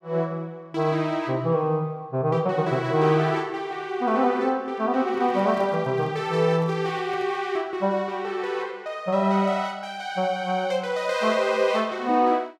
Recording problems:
microphone handling noise; from 5 to 7.5 s; peak -12 dB vs average level

